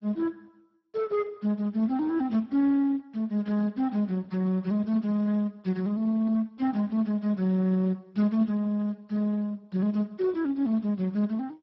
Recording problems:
codec artefacts; MP2, then Speex, log-spectral distance 2 dB, nothing above 16.5 kHz

